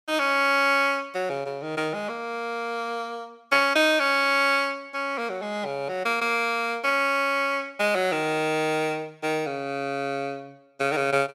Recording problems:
none

